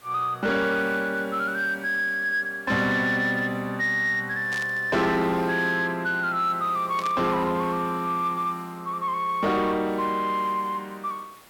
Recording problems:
distorted audio; soft clipping, signal-to-distortion ratio 12 dB
background hiss; slope -3 dB per octave, SNR 25 dB
static burst; at 4.5 s and at 7 s; peak -7 dB vs average level

